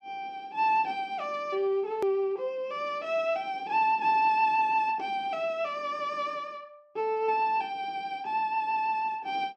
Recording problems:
click at an edit; at 2 s

